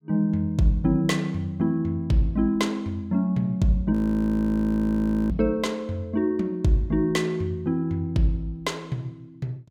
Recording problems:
audio freezing; at 4 s for 1.5 s

